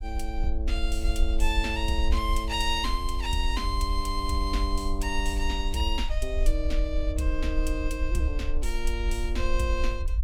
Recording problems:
low-frequency rumble; below 52 Hz, SNR 0 dB

